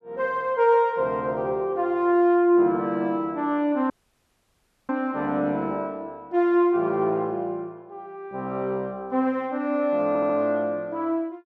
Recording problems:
audio cutting out; at 4 s for 1 s
stutter; at 10 s

